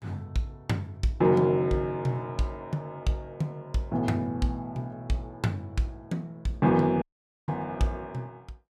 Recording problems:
audio cutting out; at 7 s

